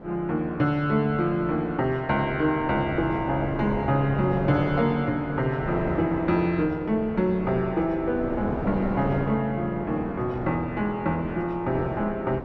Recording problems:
wind noise; below 630 Hz, SNR 9 dB

